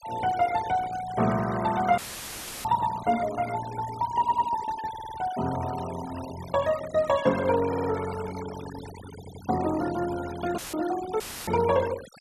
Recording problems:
denoising artefacts; signal-to-artefact ratio 14 dB
audio cutting out; at 2 s for 0.5 s and at 11 s; filled with static
stutter; 4 times, first at 4 s

